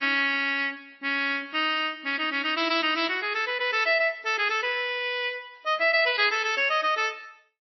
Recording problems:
lossy codec; MP3, then MP3, log-spectral distance 3 dB, nothing above 4.9 kHz

